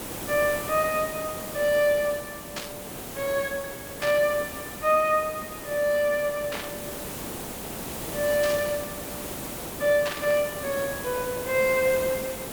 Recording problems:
background hiss; slope -5 dB per octave, SNR 9 dB
lost packets; 0.8% of the sound replaced, filled with repeated pitch periods
burst of static; 5 times, first at 2.5 s; peak -3 dB vs average level

